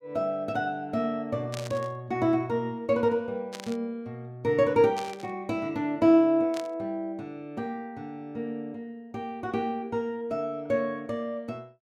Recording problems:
static burst; 4 times, first at 1.5 s; peak -6 dB vs average level

